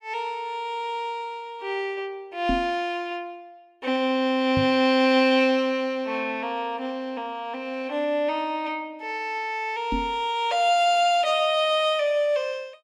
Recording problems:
microphone thump; at 2.5 s, at 4.5 s and at 10 s; peak +1 dB vs average level

